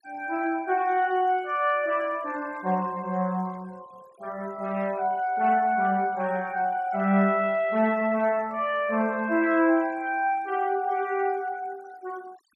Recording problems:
noise reduction artefacts; signal-to-artefact ratio 27 dB

